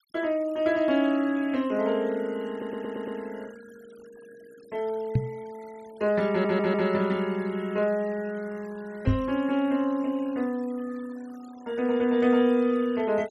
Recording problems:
denoising artefacts; signal-to-artefact ratio 25 dB
stutter; at 2.5 s and at 6.5 s
knock on the microphone; at 5 s and at 9 s; peak +6 dB vs average level

